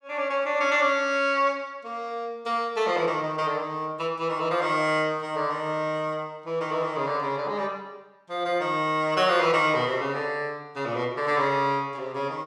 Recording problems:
none

